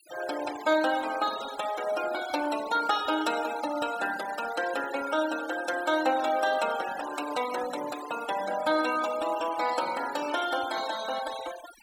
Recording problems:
denoising artefacts; signal-to-artefact ratio 12 dB

